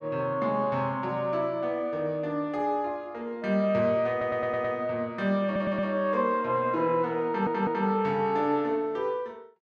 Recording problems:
audio stuttering; at 4 s, at 5.5 s and at 7.5 s

